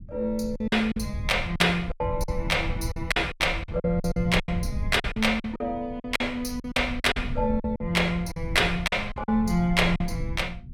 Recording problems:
low-frequency rumble; below 110 Hz, SNR 9 dB
lost packets; 13% of the sound replaced, filled with silence

